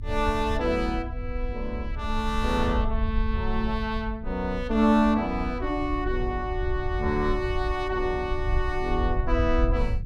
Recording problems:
low-frequency rumble; below 70 Hz, SNR 5 dB

